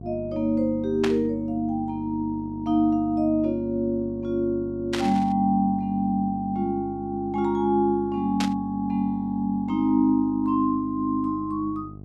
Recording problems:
electrical hum; 50 Hz, harmonics up to 750 Hz, SNR 15 dB
static burst; at 1 s, at 5 s and at 8.5 s; peak -1 dB vs average level

